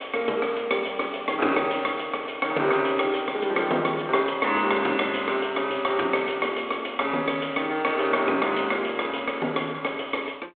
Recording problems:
telephone audio; 320 Hz to 3.5 kHz, G.726

